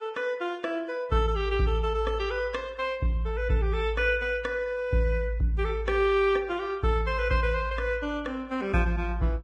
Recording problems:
codec artefacts; Vorbis, log-spectral distance 2 dB, nothing above 10.1 kHz

